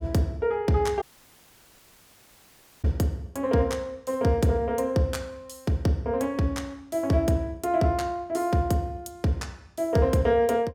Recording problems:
dropout; at 1 s for 2 s

